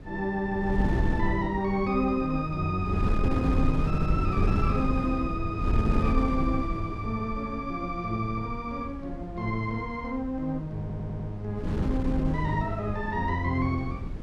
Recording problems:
wind noise; below 170 Hz, SNR 2 dB
audio stuttering; at 4 s and at 11 s

